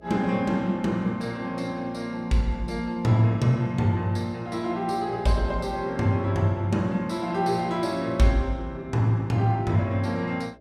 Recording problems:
hum; 60 Hz, harmonics up to 660 Hz, SNR 27 dB

